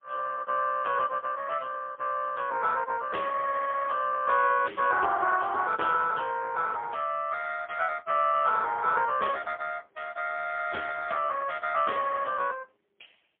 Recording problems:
phone line; 340 Hz to 2.9 kHz, AMR-NB, then MP3

